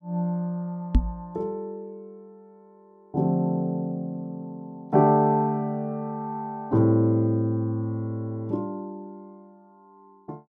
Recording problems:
microphone bump; at 1 s; peak +8 dB vs average level

